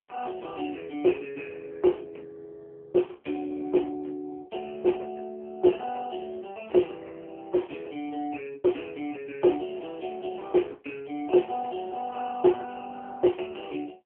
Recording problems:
telephone audio; 220 Hz to 3.2 kHz, AMR-NB

